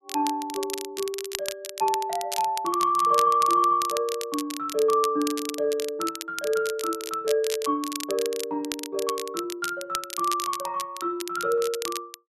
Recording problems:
crackle; vinyl, SNR 9 dB

